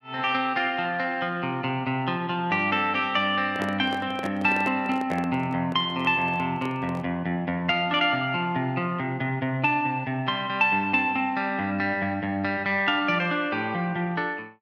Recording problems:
handling noise; from 3.5 to 7 s; peak -3 dB vs average level

